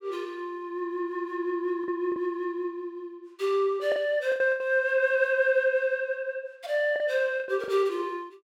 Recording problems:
packet loss; 5% of the sound replaced, filled with the last packet

